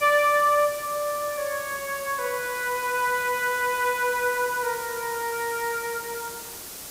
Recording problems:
background hiss; SNR 10 dB

